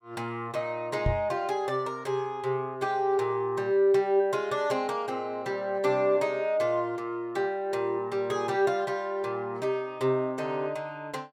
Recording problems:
knock on the microphone; at 1 s; peak +4 dB vs average level

